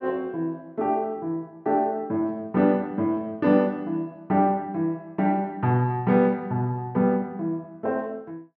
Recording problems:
none

